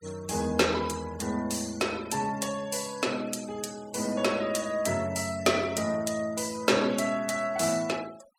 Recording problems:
denoising artefacts; signal-to-artefact ratio 18 dB

